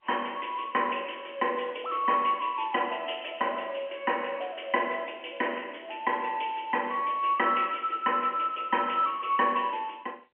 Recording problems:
telephone audio; 260 Hz to 3.1 kHz, G.711

